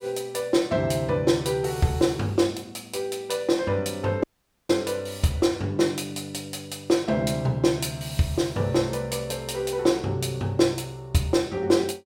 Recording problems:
dropout; at 4 s

